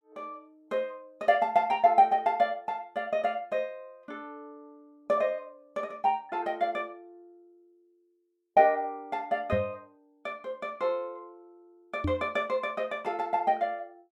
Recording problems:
knock on the microphone; at 9.5 s and at 12 s; peak +2 dB vs average level

